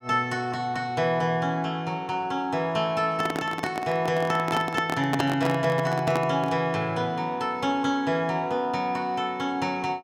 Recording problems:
microphone handling noise; from 3 to 6.5 s; peak +3 dB vs average level

